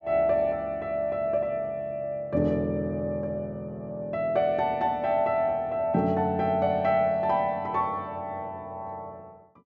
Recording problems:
none

